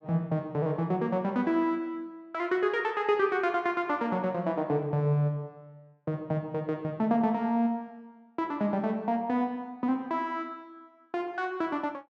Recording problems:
none

